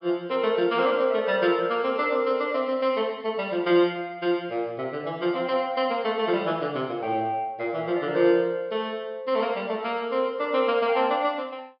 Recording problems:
treble missing; nothing above 5.5 kHz

